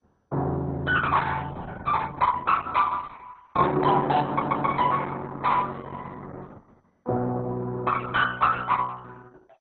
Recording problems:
codec artefacts; Opus, then MP2, log-spectral distance 4 dB
stutter; at 4.5 s

